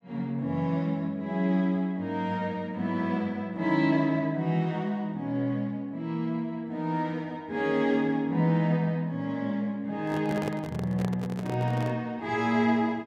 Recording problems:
microphone handling noise; from 10 to 12 s; peak -1 dB vs average level

